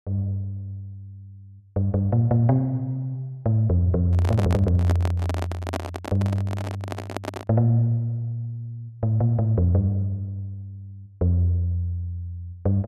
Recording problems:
handling noise; from 4 to 7.5 s; peak -2 dB vs average level

